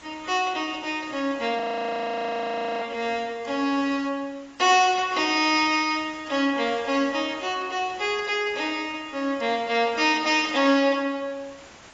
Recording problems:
lossy codec; AAC, log-spectral distance 7 dB
background hiss; slope -3 dB per octave, SNR 23 dB
audio freezing; at 1.5 s for 1 s

